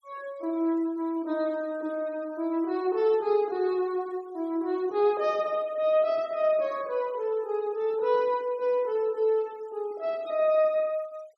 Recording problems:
denoising artefacts; signal-to-artefact ratio 28 dB

